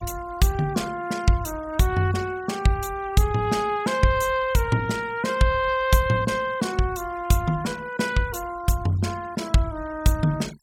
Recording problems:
noise reduction artefacts; signal-to-artefact ratio 20 dB

